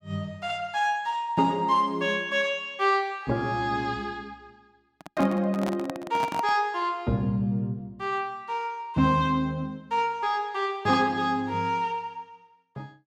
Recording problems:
microphone handling noise; from 5 to 6.5 s; peak -1 dB vs average level

